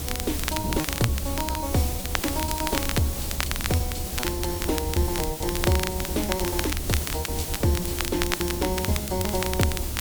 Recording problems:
background hiss; SNR 3 dB
low-frequency rumble; below 74 Hz, strongest tone 72 Hz, SNR 6 dB
wind noise; below 260 Hz, SNR 9 dB
crackling; vinyl, SNR 3 dB
lost packets; 14% of the sound replaced, filled with repeated pitch periods

